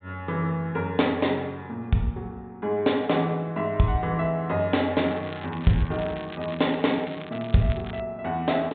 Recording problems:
low-pass filter; nothing above 4 kHz
crackling; from 5 to 8 s; loose cable, SNR 18 dB

